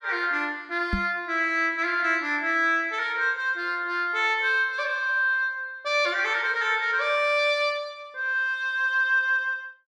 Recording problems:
microphone bump; at 1 s; peak 0 dB vs average level

